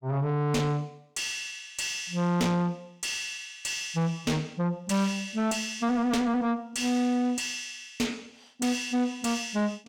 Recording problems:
distorted audio; soft clipping, signal-to-distortion ratio 8 dB

